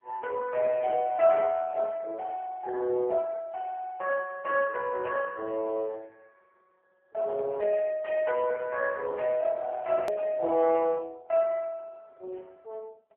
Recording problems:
telephone audio; 320 Hz to 3.3 kHz, AMR-NB
click at an edit; at 10 s

